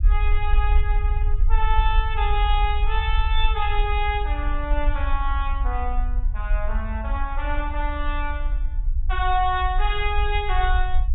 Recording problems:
low-pass filter; nothing above 3.7 kHz
rumble; below 52 Hz, SNR -1 dB

